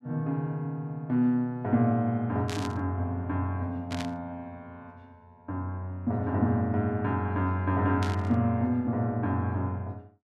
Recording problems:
burst of static; at 2.5 s, at 4 s and at 8 s; peak -5 dB vs average level

